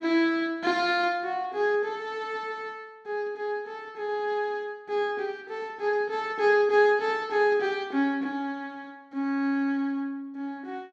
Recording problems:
none

